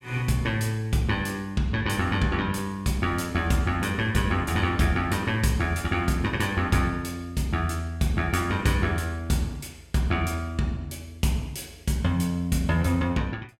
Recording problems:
none

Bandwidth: 16.5 kHz